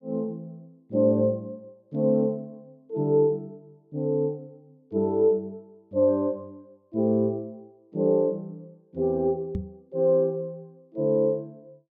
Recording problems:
microphone thump; at 9.5 s; peak -2 dB vs average level

